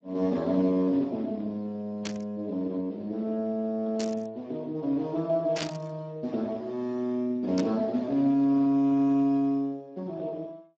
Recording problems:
codec artefacts; Speex, log-spectral distance 2 dB
static burst; 4 times, first at 2 s; peak -1 dB vs average level

